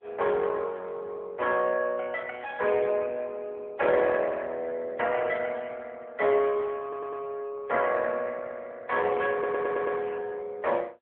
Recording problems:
telephone audio; 260 Hz to 3.3 kHz, AMR-NB
audio stuttering; at 7 s and at 9.5 s

